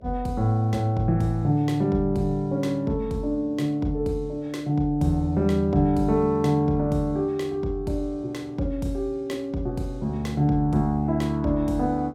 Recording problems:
hum; 60 Hz, harmonics up to 660 Hz, SNR 30 dB

